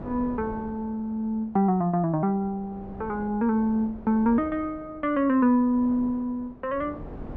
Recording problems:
wind noise; below 450 Hz, SNR 19 dB

